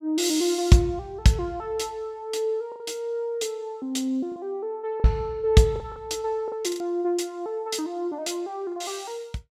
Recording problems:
packet loss; 4% of the sound replaced, filled with the last packet

